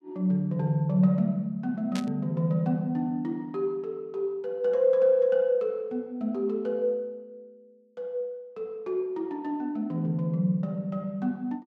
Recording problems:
burst of static; at 2 s; peak -6 dB vs average level

